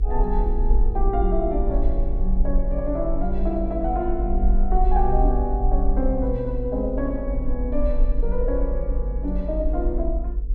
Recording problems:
hum; 50 Hz, harmonics up to 500 Hz, SNR 20 dB
low-frequency rumble; below 48 Hz, SNR -1 dB

